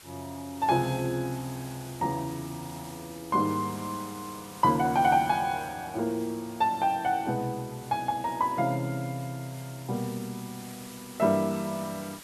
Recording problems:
background hiss; slope -1 dB per octave, SNR 17 dB

